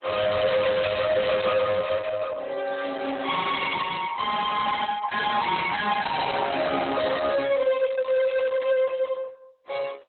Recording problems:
lossy compression; Opus, log-spectral distance 5 dB, nothing above 3.9 kHz
distortion; soft clipping, signal-to-distortion ratio 6 dB

